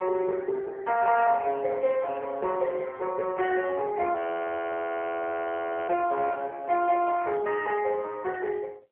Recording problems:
phone line; 340 Hz to 2.6 kHz, AMR-NB
frozen audio; at 4 s for 1.5 s

